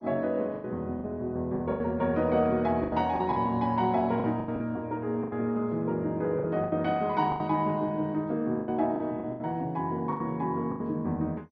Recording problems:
codec artefacts; MP2, log-spectral distance 2 dB, nothing above 4.9 kHz
lost packets; 11% of the sound replaced, filled with the last packet

